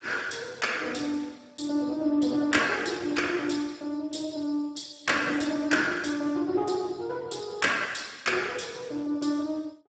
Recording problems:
lossy codec; Speex, log-spectral distance 6 dB, nothing above 7.8 kHz

